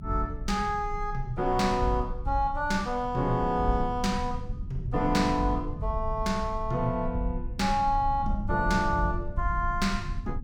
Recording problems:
low-frequency rumble; below 84 Hz, strongest tone 24 Hz, SNR 9 dB

